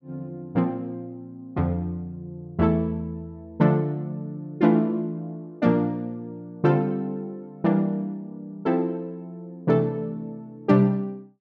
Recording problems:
none

